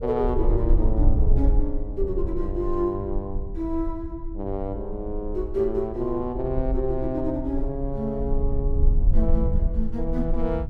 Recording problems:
low-frequency rumble; below 54 Hz, strongest tone 22 Hz, SNR 0 dB

